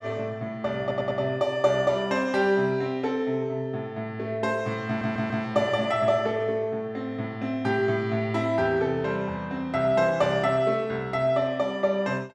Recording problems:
stutter; at 1 s and at 5 s

